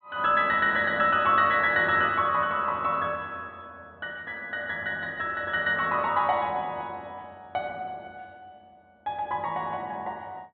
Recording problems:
treble missing; nothing above 4 kHz

